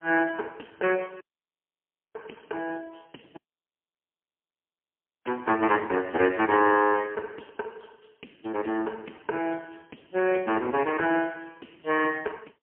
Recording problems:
telephone audio; 240 Hz to 3.1 kHz, AMR-NB, then MP3
dropout; at 1 s for 1 s and at 3.5 s for 2 s

